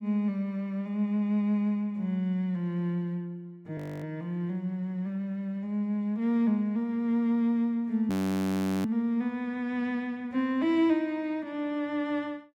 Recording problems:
audio freezing; at 4 s and at 8 s for 1 s

